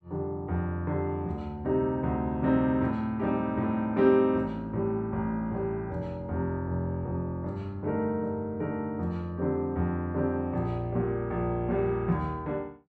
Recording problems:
none

